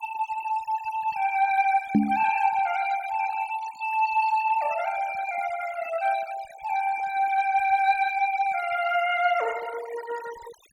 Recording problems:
noise reduction artefacts; signal-to-artefact ratio 16 dB
microphone thump; at 2 s; peak +8 dB vs average level

